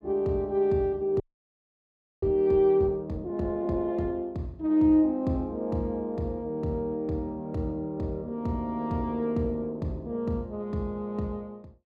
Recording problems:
frozen audio; at 1 s for 1 s

